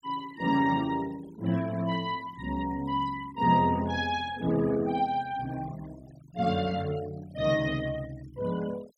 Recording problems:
noise reduction artefacts; signal-to-artefact ratio 20 dB

